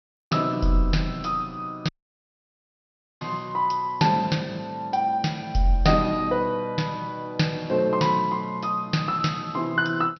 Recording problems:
low-pass filter; nothing above 5.9 kHz
audio cutting out; at 2 s for 1.5 s

